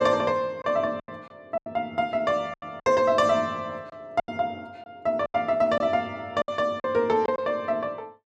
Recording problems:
lost packets; 9% of the sound replaced, filled with silence

